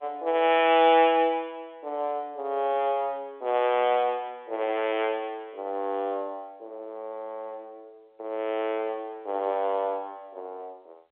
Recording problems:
telephone audio; 340 Hz to 3.6 kHz, G.711

